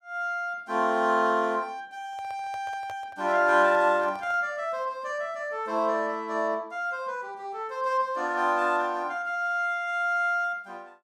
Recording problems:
microphone handling noise; from 2 to 4.5 s; peak -12 dB vs average level

